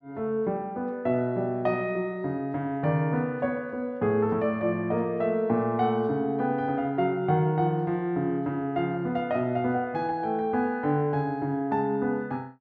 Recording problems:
none

